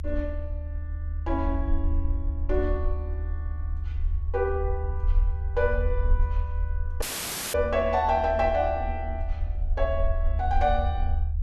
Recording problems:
low-frequency rumble; below 76 Hz, SNR 2 dB
audio cutting out; at 7 s for 0.5 s

